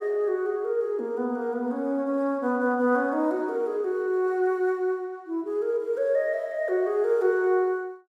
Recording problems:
none

